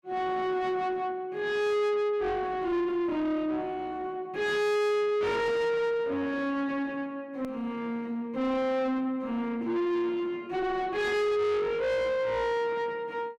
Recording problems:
distorted audio; soft clipping, signal-to-distortion ratio 5 dB
hard cut with a click; at 7.5 s

